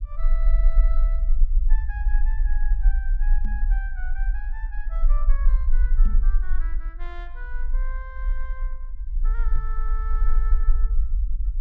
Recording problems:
low-frequency rumble; below 40 Hz, strongest tone 24 Hz, SNR -17 dB
knock on the microphone; at 3.5 s, at 6 s and at 9.5 s; peak +6 dB vs average level

